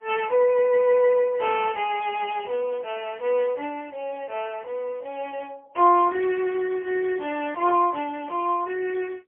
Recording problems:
phone line; 300 Hz to 3.3 kHz, AMR-NB, then MP3

